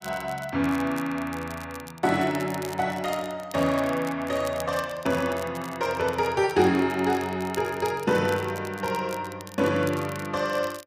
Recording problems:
crackle; vinyl, SNR 18 dB

